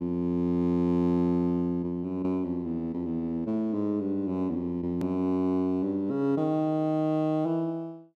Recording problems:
edit click; at 5 s

